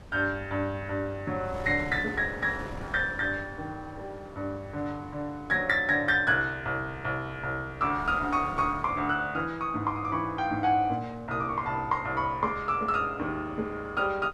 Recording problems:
wind on the microphone; below 470 Hz, SNR 18 dB

